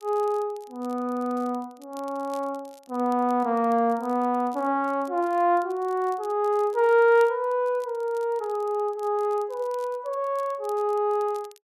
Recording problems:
crackle; vinyl, SNR 29 dB

